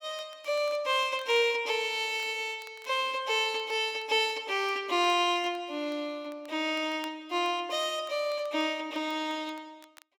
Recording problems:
crackle; vinyl, SNR 29 dB

